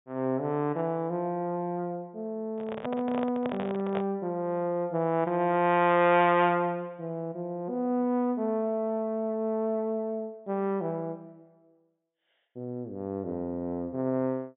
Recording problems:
treble cut off; nothing above 3.7 kHz
microphone handling noise; from 2.5 to 4 s; peak -2 dB vs average level

